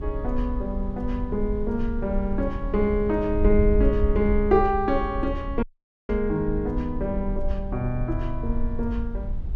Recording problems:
low-frequency rumble; below 88 Hz, SNR 12 dB
wind on the microphone; below 60 Hz, SNR 5 dB
audio cutting out; at 5.5 s

